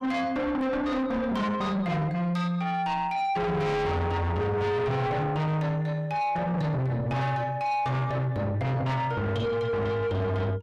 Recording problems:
distortion; soft clipping, signal-to-distortion ratio 6 dB

